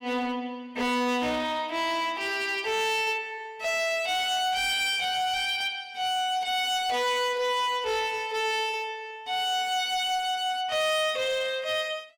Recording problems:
distortion; hard clipping, signal-to-distortion ratio 10 dB

